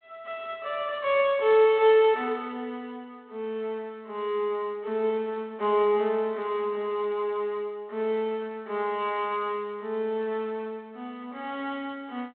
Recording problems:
phone line; 240 Hz to 3.5 kHz, G.726

